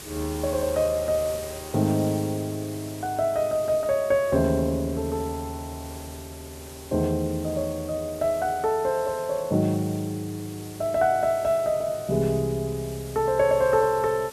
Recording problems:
background hiss; SNR 16 dB

